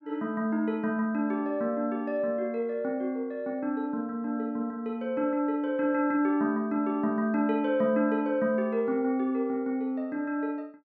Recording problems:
none

